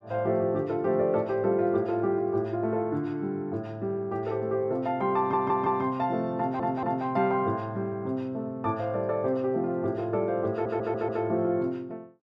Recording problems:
audio stuttering; at 5 s, at 6.5 s and at 11 s

